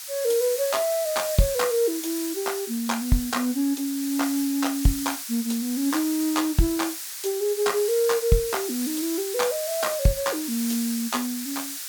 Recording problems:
background hiss; SNR 6 dB

